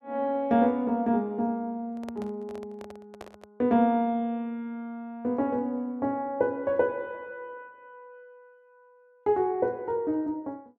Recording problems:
microphone handling noise; from 2 to 3.5 s; peak -10 dB vs average level

